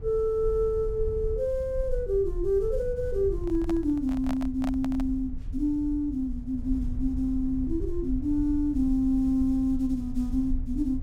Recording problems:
low-frequency rumble; below 62 Hz, SNR 9 dB
handling noise; from 3.5 to 5 s; peak -4 dB vs average level

